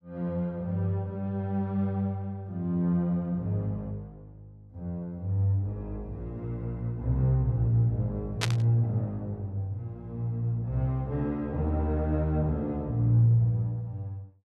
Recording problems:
burst of static; at 8.5 s; peak +5 dB vs average level

